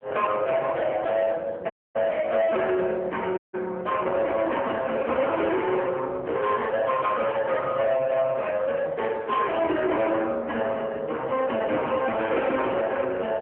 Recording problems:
phone line; 300 Hz to 3.1 kHz, AMR-NB
distorted audio; soft clipping, signal-to-distortion ratio 10 dB
audio cutting out; at 1.5 s and at 3.5 s

